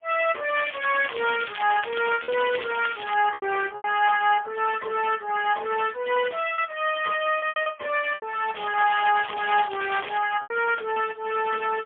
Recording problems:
telephone audio; 320 Hz to 3.3 kHz, AMR-NB, then MP3
lost packets; 5% of the sound replaced, filled with repeated pitch periods
crackling; from 0.5 to 3 s and from 8.5 to 10 s; loose cable, SNR 14 dB

